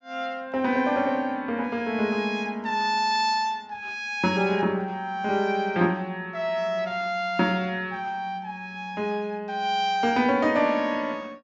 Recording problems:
low-pass filter; nothing above 7.7 kHz

